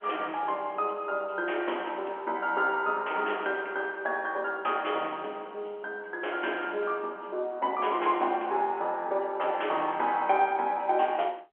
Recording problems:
telephone audio; 320 Hz to 3.3 kHz, G.711

